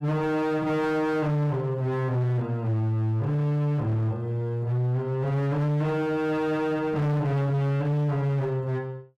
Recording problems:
distortion; hard clipping, signal-to-distortion ratio 7 dB

